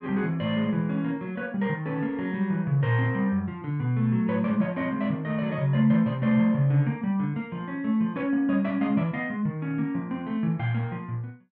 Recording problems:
none

